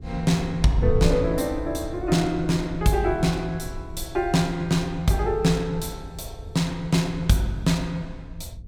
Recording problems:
wind noise; below 96 Hz, SNR 11 dB

